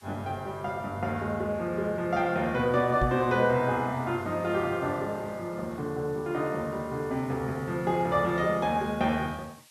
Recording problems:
background hiss; slope +3 dB per octave, SNR 27 dB
microphone bump; at 3 s; peak +2 dB vs average level

